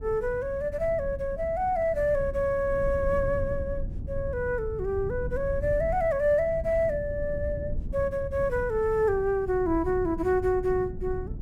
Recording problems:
rumble; below 110 Hz, SNR 10 dB

